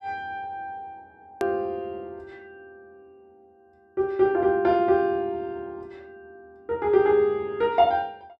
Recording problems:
hard cut with a click; at 1.5 s

